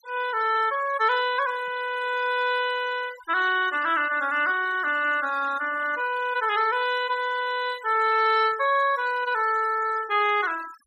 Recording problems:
noise reduction artefacts; signal-to-artefact ratio 18 dB

